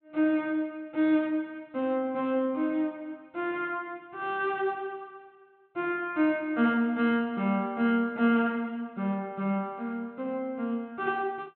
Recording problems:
treble cut off; nothing above 4 kHz

